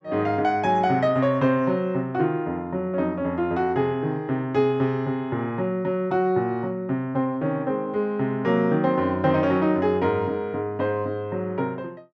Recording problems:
none

